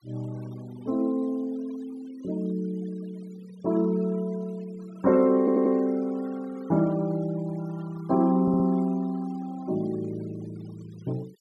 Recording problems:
noise reduction artefacts; signal-to-artefact ratio 25 dB
audio stuttering; at 5.5 s and at 8.5 s

